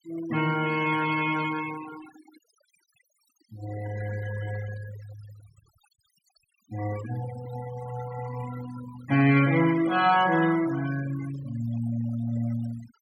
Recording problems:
denoising artefacts; signal-to-artefact ratio 14 dB

